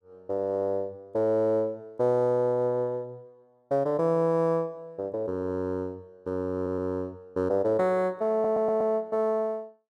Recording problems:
audio stuttering; at 6.5 s and at 8.5 s

